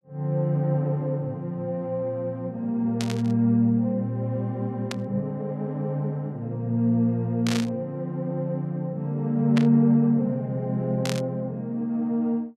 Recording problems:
static burst; 5 times, first at 3 s; peak -1 dB vs average level

